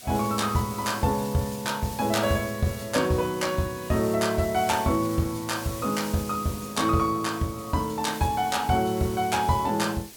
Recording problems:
background hiss; SNR 14 dB

